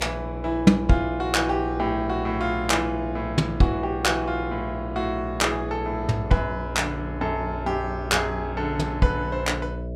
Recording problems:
electrical hum; 60 Hz, harmonics up to 660 Hz, SNR 8 dB

